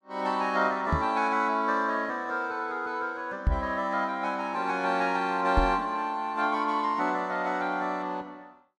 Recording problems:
microphone bump; at 1 s, at 3.5 s and at 5.5 s; peak +6 dB vs average level

